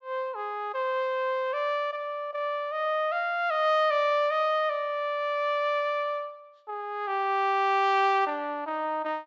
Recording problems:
treble missing; nothing above 8 kHz

